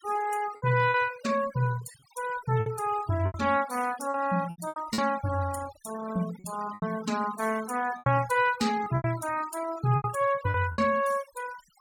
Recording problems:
noise reduction artefacts; signal-to-artefact ratio 16 dB
packet loss; 8% of the sound replaced, filled with repeated pitch periods

